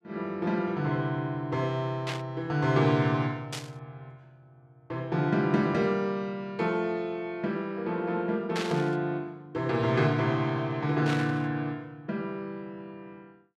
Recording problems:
burst of static; 4 times, first at 2 s; peak -1 dB vs average level

